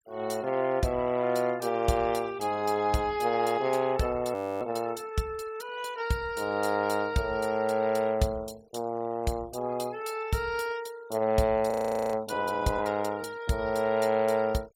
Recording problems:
denoising artefacts; signal-to-artefact ratio 21 dB
audio freezing; at 4.5 s and at 12 s

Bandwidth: 16.5 kHz